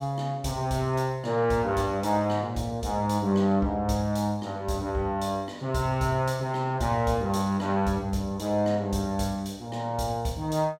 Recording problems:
none

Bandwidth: 16.5 kHz